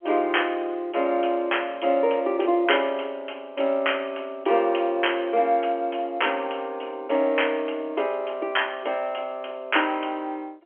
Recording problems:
phone line; 280 Hz to 3.3 kHz, G.711

